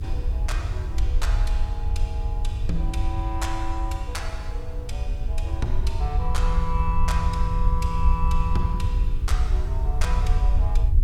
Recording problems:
hum; 60 Hz, harmonics up to 420 Hz, SNR 7 dB
hiss; SNR 28 dB
rumble; below 64 Hz, SNR -6 dB

